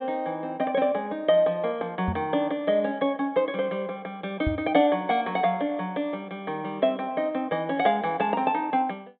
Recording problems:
low-pass filter; nothing above 4 kHz
microphone thump; at 2 s and at 4.5 s; peak +1 dB vs average level

